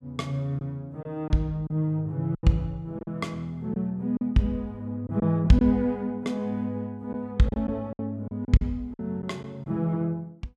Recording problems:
packet loss; 6% of the sound replaced, filled with silence

